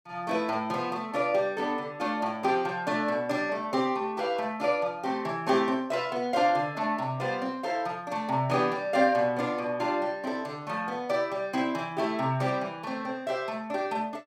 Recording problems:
none

